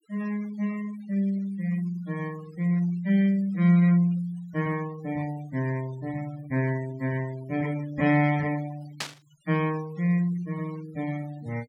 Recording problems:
denoising artefacts; signal-to-artefact ratio 22 dB
static burst; at 9 s; peak +1 dB vs average level

